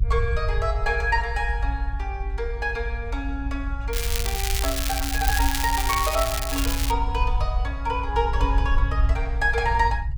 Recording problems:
rumble; below 58 Hz, SNR 1 dB
crackling; from 4 to 7 s; loose cable, SNR 1 dB

